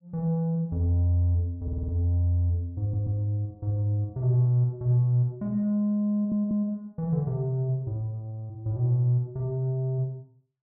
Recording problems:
audio stuttering; at 1.5 s, at 3 s and at 6 s

